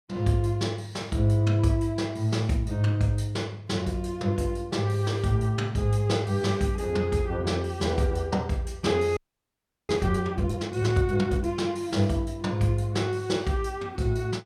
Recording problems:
audio freezing; at 9 s for 0.5 s

